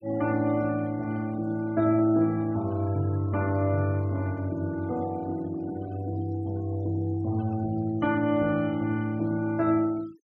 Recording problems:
denoising artefacts; signal-to-artefact ratio 25 dB

